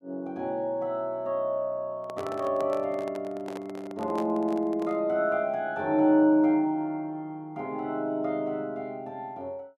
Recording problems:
handling noise; from 2 to 5 s; peak -5 dB vs average level

